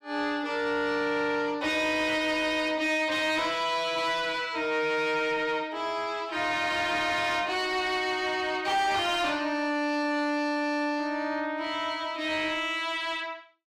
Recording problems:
distorted audio; soft clipping, signal-to-distortion ratio 10 dB

